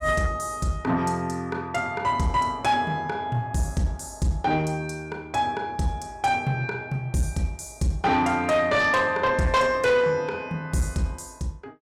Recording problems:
distorted audio; soft clipping, signal-to-distortion ratio 12 dB

